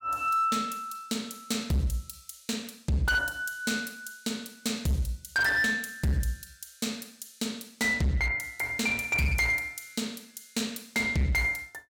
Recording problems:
distortion; hard clipping, signal-to-distortion ratio 10 dB

